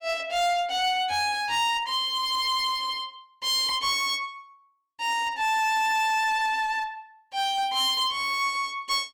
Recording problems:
distortion; hard clipping, uneven, signal-to-distortion ratio 10 dB

